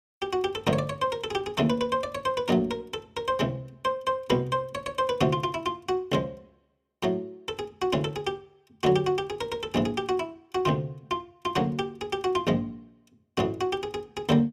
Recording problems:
none

